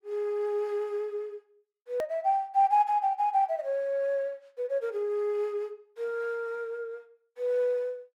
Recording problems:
edit click; at 2 s

